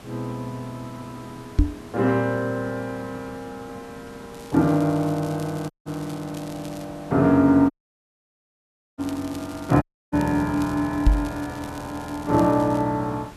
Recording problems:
background hiss; slope -5 dB per octave, SNR 20 dB
microphone bump; at 1.5 s and at 11 s; peak +9 dB vs average level
crackling; from 4.5 to 7 s and from 9 to 13 s; loose cable, SNR 22 dB
dropout; at 5.5 s, at 7.5 s for 1.5 s and at 10 s

